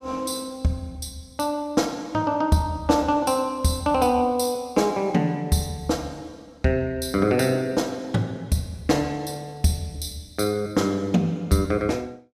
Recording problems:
none

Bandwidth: 14.5 kHz